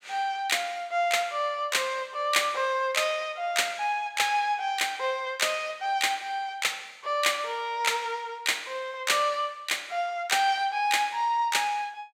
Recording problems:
none

